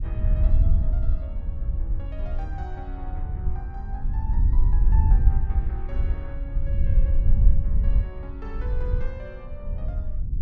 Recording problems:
rumble; below 62 Hz, SNR 4 dB
wind on the microphone; below 64 Hz, SNR -16 dB

